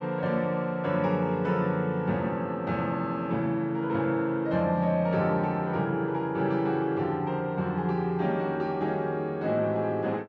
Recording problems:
none

